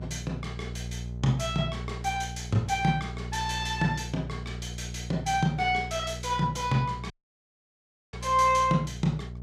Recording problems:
hum; 60 Hz, harmonics up to 600 Hz, SNR 10 dB
audio cutting out; at 7 s for 1 s

